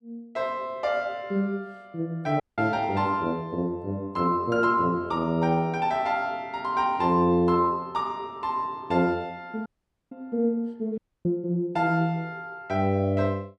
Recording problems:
dropout; at 2.5 s, at 9.5 s and at 11 s

